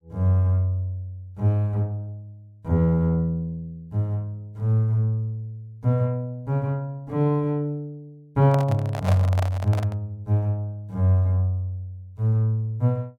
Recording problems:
microphone handling noise; from 8.5 to 10 s; peak -1 dB vs average level

